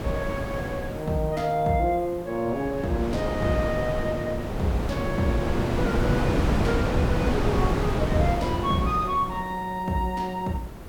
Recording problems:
hiss; slope +4 dB per octave, SNR 27 dB
wind noise; below 520 Hz, SNR 0 dB

